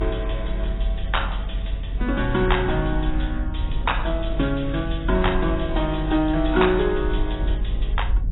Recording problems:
lossy codec; AAC, log-spectral distance 6 dB, nothing above 3.8 kHz
hum; 50 Hz, harmonics up to 500 Hz, SNR 18 dB
low-frequency rumble; below 48 Hz, strongest tone 44 Hz, SNR 4 dB

